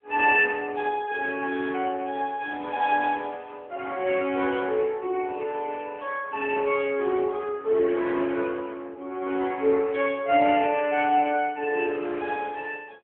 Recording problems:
phone line; 240 Hz to 3.4 kHz, AMR-NB

